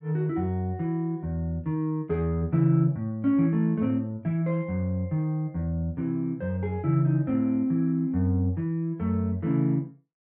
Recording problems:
none

